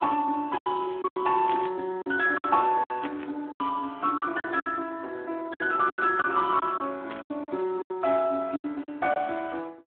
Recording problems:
telephone audio; 240 Hz to 3.6 kHz, Speex
lost packets; 11% of the sound replaced, filled with silence
burst of static; at 1.5 s, at 3 s and at 7 s; peak -3 dB vs average level

